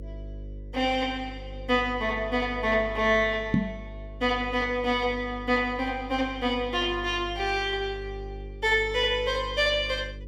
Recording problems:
mains hum; 50 Hz, harmonics up to 550 Hz, SNR 15 dB
microphone bump; at 3.5 s; peak +6 dB vs average level

